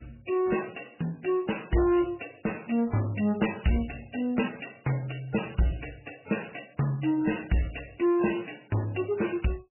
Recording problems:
lossy codec; MP3, then MP3, log-spectral distance 10 dB, nothing above 2.9 kHz
distortion; soft clipping, signal-to-distortion ratio 10 dB

